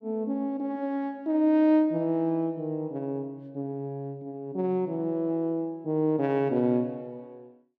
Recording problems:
none

